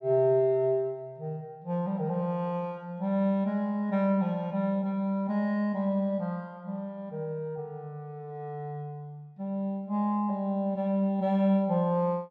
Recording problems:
none

